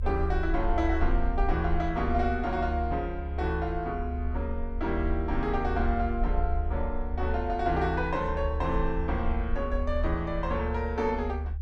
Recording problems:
low-frequency rumble; below 72 Hz, SNR 2 dB

